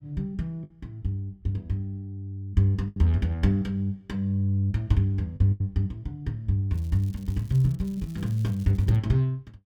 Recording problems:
lost packets; 3% of the sound replaced, filled with the last packet
crackle; from 6.5 to 9 s; loose cable, SNR 27 dB

